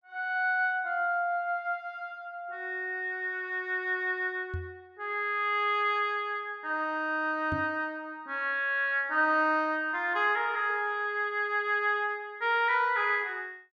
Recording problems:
microphone bump; at 4.5 s and at 7.5 s; peak -2 dB vs average level

